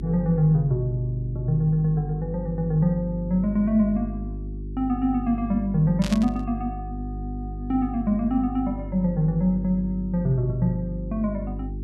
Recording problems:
hum; 50 Hz, harmonics up to 400 Hz, SNR 9 dB
burst of static; at 6 s; peak -5 dB vs average level

